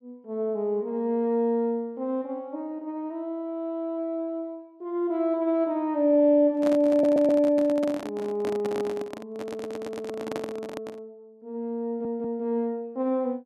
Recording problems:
handling noise; from 6.5 to 11 s; peak -3 dB vs average level
stutter; at 7 s, at 9.5 s and at 12 s

